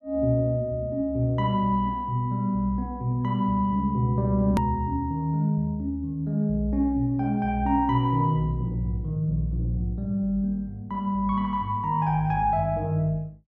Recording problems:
edit click; at 4.5 s

